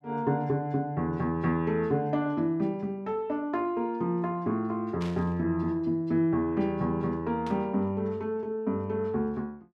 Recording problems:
burst of static; at 5 s and at 7.5 s; peak -11 dB vs average level

